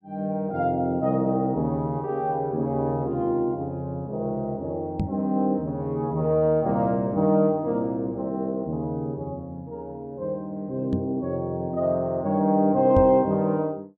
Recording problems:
microphone thump; at 5 s, at 11 s and at 13 s; peak +3 dB vs average level

